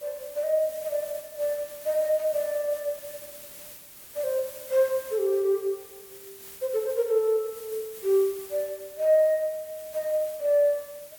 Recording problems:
hiss; slope -1 dB per octave, SNR 16 dB

